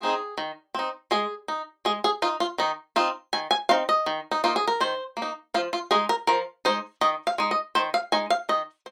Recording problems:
none

